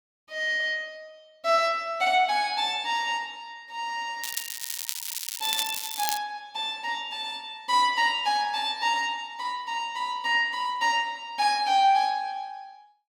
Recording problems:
crackle; from 4 to 6 s; loose cable, SNR 5 dB

